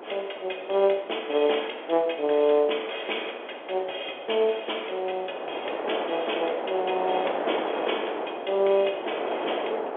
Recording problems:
phone line; 300 Hz to 3.4 kHz, G.711
wind noise; below 870 Hz, SNR 6 dB

